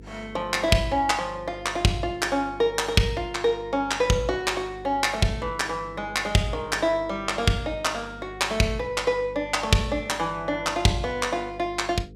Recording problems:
electrical hum; 50 Hz, harmonics up to 500 Hz, SNR 20 dB

